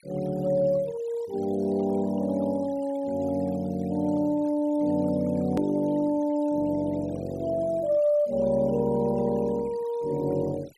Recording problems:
denoising artefacts; signal-to-artefact ratio 25 dB
click at an edit; at 5.5 s

